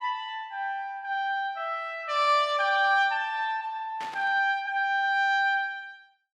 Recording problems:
burst of static; at 4 s; peak -11 dB vs average level

